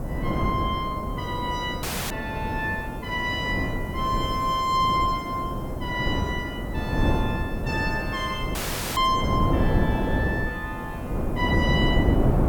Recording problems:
background hiss; slope +5 dB per octave, SNR 25 dB
wind on the microphone; below 340 Hz, SNR 0 dB
dropout; at 2 s and at 8.5 s

